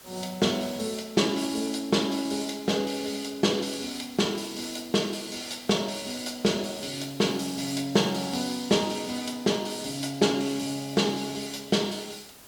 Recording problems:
hiss; slope -2 dB per octave, SNR 20 dB

